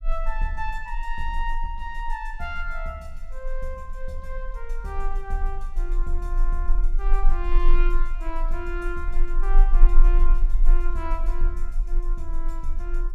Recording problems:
low-frequency rumble; below 30 Hz, strongest tone 22 Hz, SNR -7 dB

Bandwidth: 17 kHz